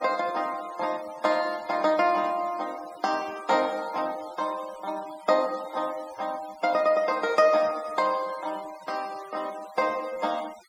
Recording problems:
noise reduction artefacts; signal-to-artefact ratio 20 dB

